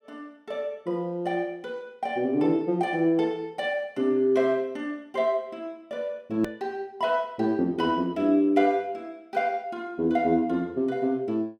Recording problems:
edit click; at 6.5 s

